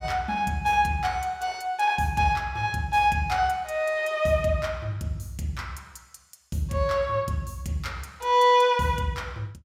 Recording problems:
none

